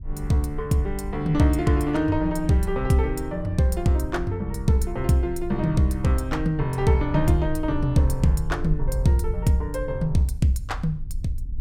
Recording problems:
rumble; below 64 Hz, SNR 10 dB

